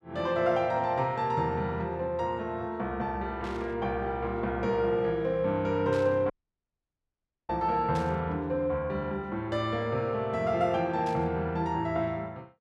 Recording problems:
static burst; 4 times, first at 3.5 s; peak -11 dB vs average level
audio cutting out; at 6.5 s for 1 s

